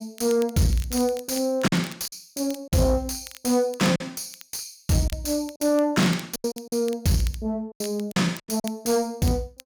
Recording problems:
distortion; soft clipping, signal-to-distortion ratio 12 dB
crackle; vinyl, SNR 19 dB
lost packets; 6% of the sound replaced, filled with silence

